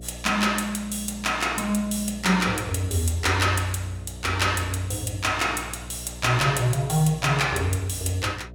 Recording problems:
hum; 60 Hz, harmonics up to 720 Hz, SNR 17 dB

